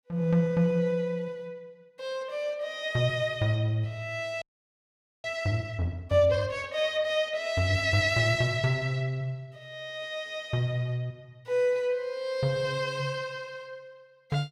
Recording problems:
frozen audio; at 4.5 s for 1 s

